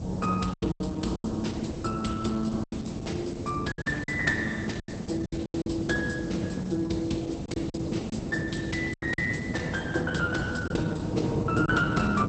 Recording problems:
lossy codec; Opus, log-spectral distance 4 dB, nothing above 8.2 kHz
background hiss; SNR 24 dB
wind on the microphone; below 310 Hz, SNR 3 dB
packet loss; 8% of the sound replaced, filled with silence

